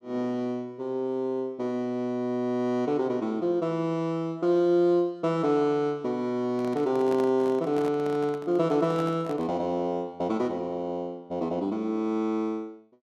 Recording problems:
handling noise; from 6.5 to 9.5 s; peak -7 dB vs average level

